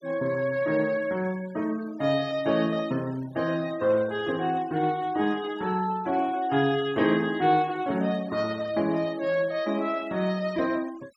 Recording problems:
noise reduction artefacts; signal-to-artefact ratio 22 dB

